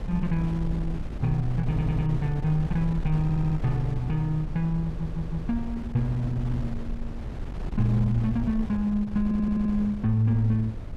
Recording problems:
wind noise; below 110 Hz, SNR 8 dB
stutter; 4 times, first at 1.5 s

